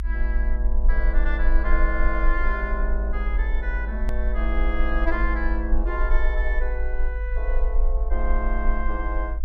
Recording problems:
rumble; below 50 Hz, strongest tone 20 Hz, SNR -5 dB
click at an edit; at 4 s

